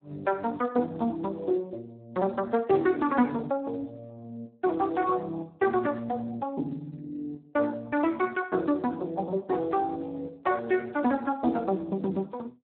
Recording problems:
phone line; 190 Hz to 2.9 kHz, Speex

